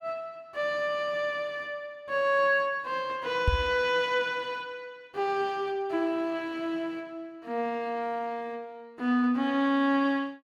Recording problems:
microphone thump; at 3.5 s; peak +6 dB vs average level

